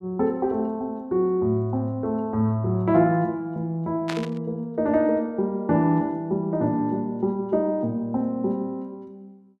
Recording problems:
static burst; at 4 s; peak -3 dB vs average level

